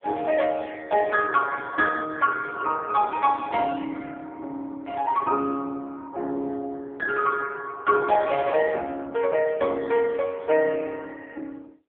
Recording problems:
telephone audio; 280 Hz to 2.5 kHz, AMR-NB

